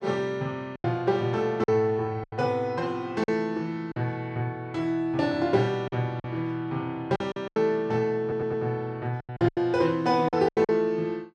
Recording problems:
packet loss; 8% of the sound replaced, filled with silence
audio stuttering; at 8 s

